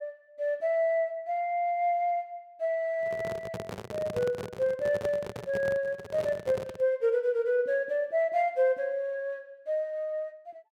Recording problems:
handling noise; from 3 to 7 s; peak -4 dB vs average level

